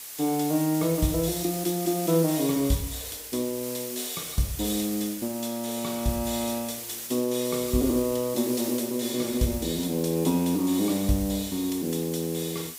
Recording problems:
background hiss; slope +2 dB per octave, SNR 8 dB

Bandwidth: 15.5 kHz